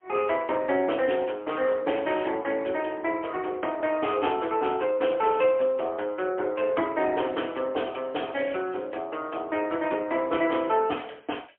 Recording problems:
telephone audio; 280 Hz to 3.2 kHz, AMR-NB, then MP3

